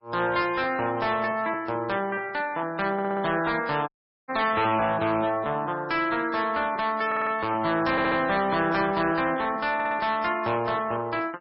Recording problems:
codec artefacts; MP3, log-spectral distance 3 dB, nothing above 5 kHz
distorted audio; hard clipping, signal-to-distortion ratio 10 dB
stutter; 4 times, first at 3 s
audio cutting out; at 4 s

